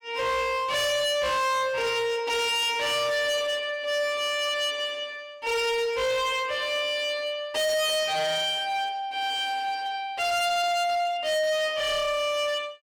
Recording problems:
distortion; hard clipping, signal-to-distortion ratio 6 dB

